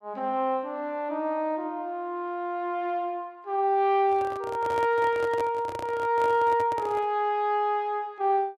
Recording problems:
handling noise; from 4 to 7 s; peak -6 dB vs average level

